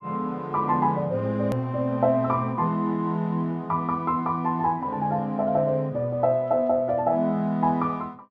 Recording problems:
hard cut with a click; at 1.5 s

